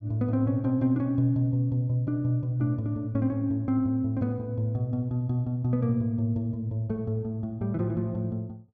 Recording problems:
none

